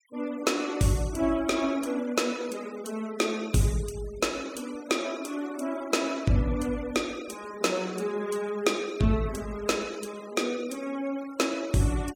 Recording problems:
noise reduction artefacts; signal-to-artefact ratio 19 dB

